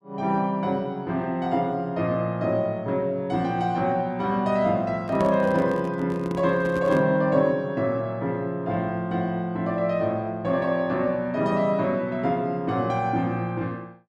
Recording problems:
handling noise; from 5 to 7 s; peak -3 dB vs average level

